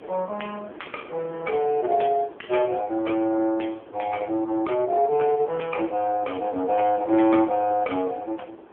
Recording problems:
telephone audio; 220 Hz to 3.3 kHz, AMR-NB
wind noise; below 770 Hz, SNR 21 dB

